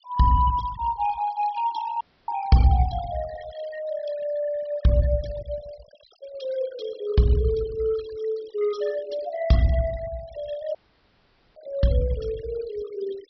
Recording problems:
treble cut off; nothing above 5.5 kHz
noise reduction artefacts; signal-to-artefact ratio 17 dB
audio cutting out; at 2 s and at 11 s for 1 s

